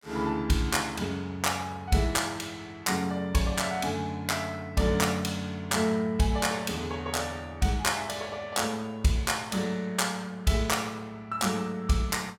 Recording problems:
none

